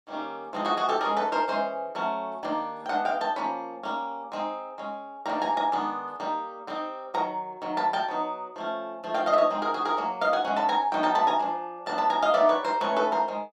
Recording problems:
none

